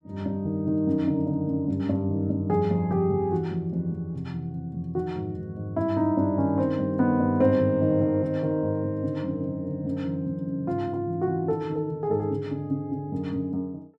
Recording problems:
none

